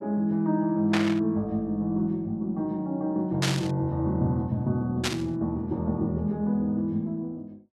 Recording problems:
burst of static; at 1 s, at 3.5 s and at 5 s; peak +4 dB vs average level

